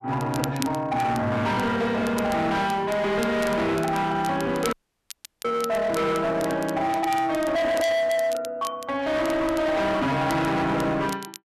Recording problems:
distortion; hard clipping, uneven, signal-to-distortion ratio 7 dB
crackling; vinyl, SNR 17 dB
audio cutting out; at 4.5 s for 0.5 s

